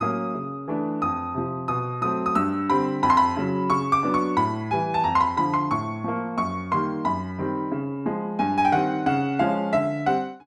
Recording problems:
none

